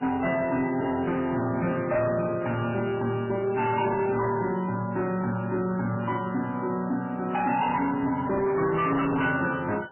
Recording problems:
lossy compression; MP3, log-spectral distance 3 dB, nothing above 2.8 kHz
distortion; hard clipping, signal-to-distortion ratio 11 dB

